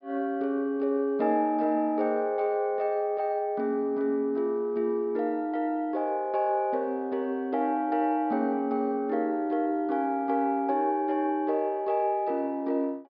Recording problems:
treble cut off; nothing above 5.5 kHz

